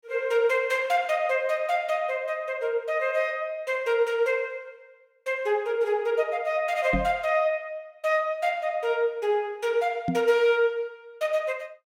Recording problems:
microphone thump; at 7 s and at 10 s; peak +2 dB vs average level

